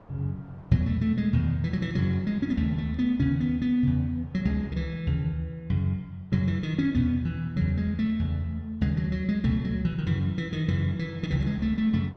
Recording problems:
wind noise; below 800 Hz, SNR 29 dB

